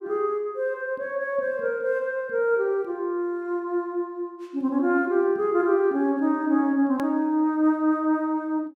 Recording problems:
click at an edit; at 7 s

